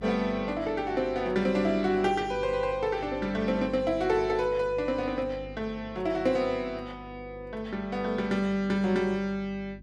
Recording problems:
hum; 50 Hz, harmonics up to 400 Hz, SNR 18 dB

